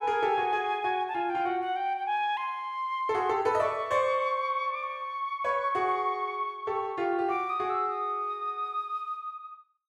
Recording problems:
none

